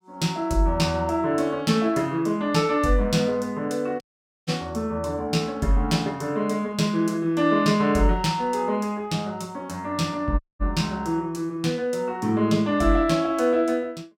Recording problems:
audio cutting out; at 4 s and at 10 s

